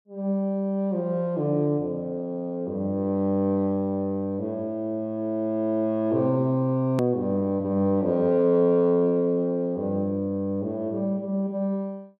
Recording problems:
edit click; at 7 s

